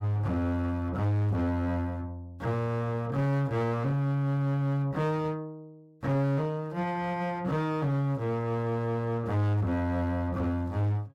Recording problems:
distorted audio; hard clipping, uneven, signal-to-distortion ratio 10 dB

